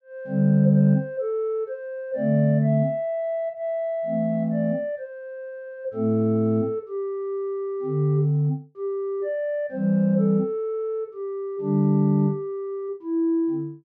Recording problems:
none

